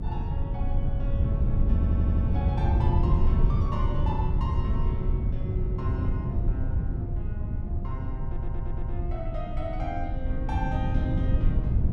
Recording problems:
rumble; below 48 Hz, strongest tone 22 Hz, SNR 3 dB
wind noise; below 120 Hz, SNR -10 dB
stutter; at 2 s and at 8.5 s

